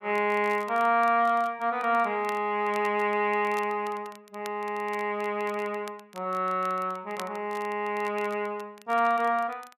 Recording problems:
crackle; vinyl, SNR 23 dB

